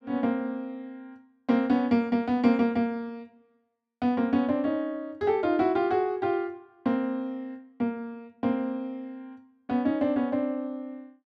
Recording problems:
none

